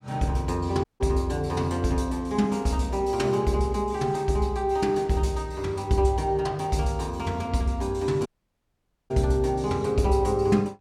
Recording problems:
audio cutting out; at 1 s and at 8.5 s for 1 s

